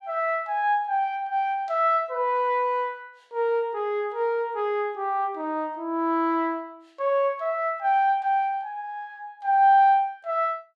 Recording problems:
none

